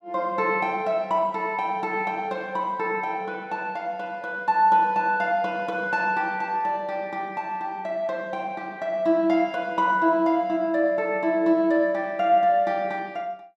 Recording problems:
none

